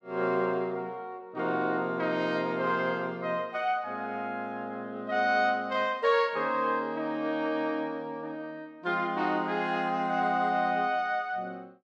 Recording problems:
none

